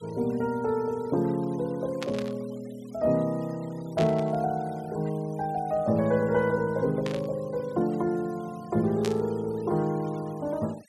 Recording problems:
denoising artefacts; signal-to-artefact ratio 25 dB
static burst; 4 times, first at 2 s; peak -3 dB vs average level

